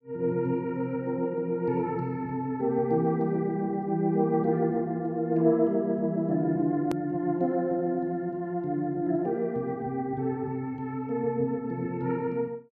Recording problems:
edit click; at 7 s

